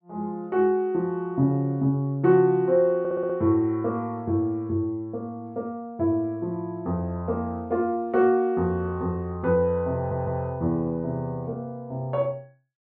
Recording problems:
stutter; at 3 s and at 10 s

